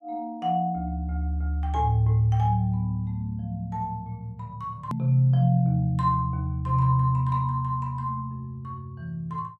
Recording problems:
hard cut with a click; at 5 s

